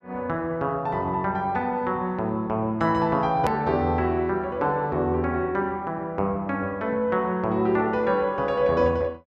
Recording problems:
click at an edit; at 3.5 s

